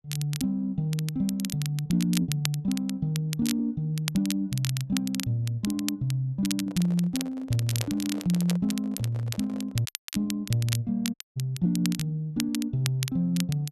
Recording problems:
crackling; vinyl, SNR 9 dB
lost packets; 1.1% of the sound replaced, filled with repeated pitch periods
handling noise; from 6.5 to 10 s; peak -8 dB vs average level
dropout; at 10 s and at 11 s

